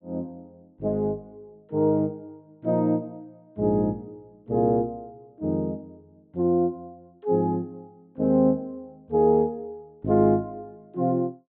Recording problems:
treble missing; nothing above 4 kHz

